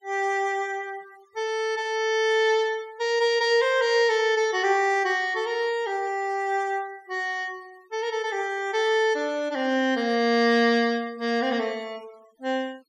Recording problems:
denoising artefacts; signal-to-artefact ratio 27 dB

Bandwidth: 16 kHz